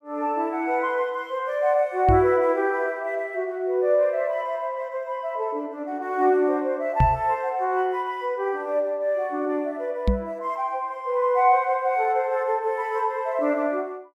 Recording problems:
microphone thump; at 2 s, at 7 s and at 10 s; peak +6 dB vs average level

